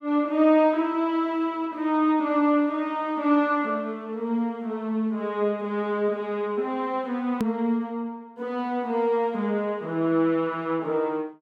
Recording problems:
edit click; at 7.5 s

